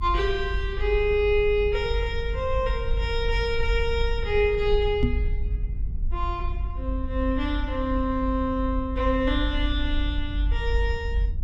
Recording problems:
low-frequency rumble; below 54 Hz, strongest tone 48 Hz, SNR 3 dB
knock on the microphone; at 5 s; peak +6 dB vs average level

